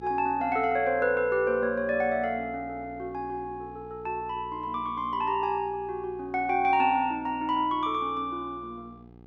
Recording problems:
hum; 60 Hz, harmonics up to 1.3 kHz, SNR 21 dB

